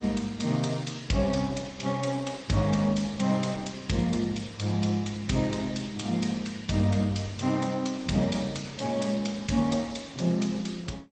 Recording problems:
codec artefacts; MP2, then Opus, log-spectral distance 5 dB, nothing above 8.2 kHz

